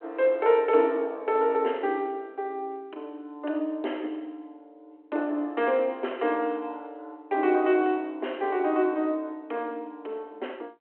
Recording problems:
phone line; 260 Hz to 3.2 kHz, G.726

